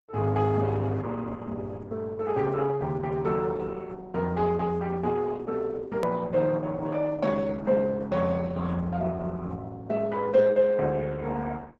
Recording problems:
lossy compression; Opus, log-spectral distance 3 dB, nothing above 13.1 kHz
click at an edit; at 6 s

